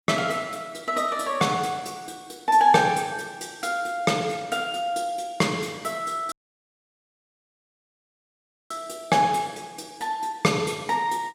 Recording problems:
dropout; at 6.5 s for 2.5 s

